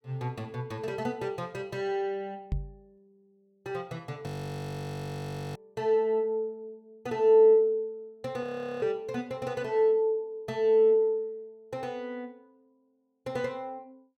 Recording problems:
microphone thump; at 2.5 s; peak +1 dB vs average level
audio freezing; at 4.5 s for 1.5 s and at 8.5 s

